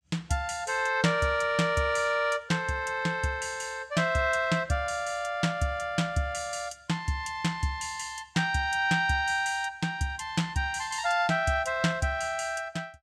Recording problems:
none

